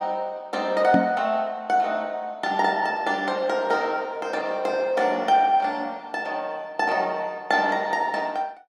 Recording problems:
microphone thump; at 1 s; peak +5 dB vs average level

